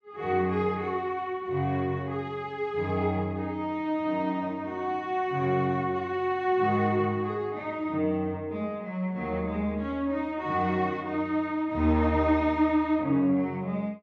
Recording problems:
none

